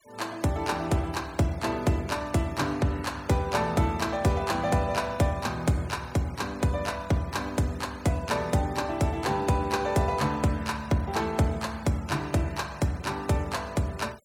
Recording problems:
noise reduction artefacts; signal-to-artefact ratio 22 dB

